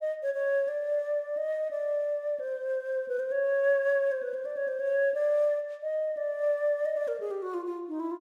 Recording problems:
none

